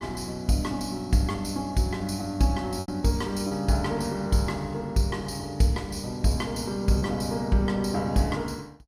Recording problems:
packet loss; 2% of the sound replaced, filled with repeated pitch periods

